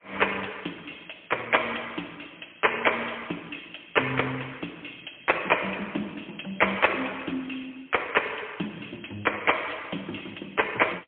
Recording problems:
phone line; 220 Hz to 3.4 kHz, AMR-NB, then MP3

